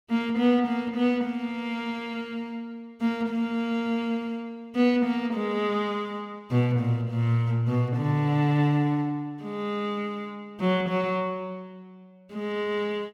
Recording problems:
none

